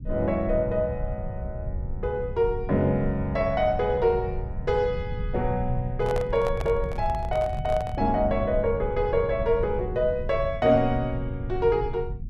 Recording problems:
low-frequency rumble; below 110 Hz, SNR 9 dB
handling noise; from 6 to 8 s; peak -4 dB vs average level

